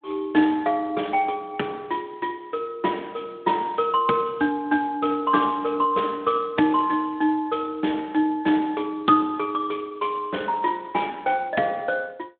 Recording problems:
telephone audio; 220 Hz to 3.6 kHz, Speex

